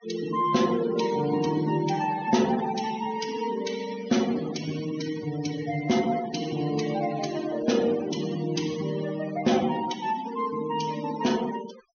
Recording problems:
treble cut off; nothing above 6.4 kHz
denoising artefacts; signal-to-artefact ratio 14 dB

